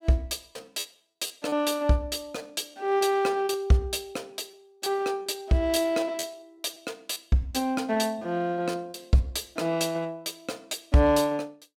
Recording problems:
packet loss; 7% of the sound replaced, filled with repeated pitch periods

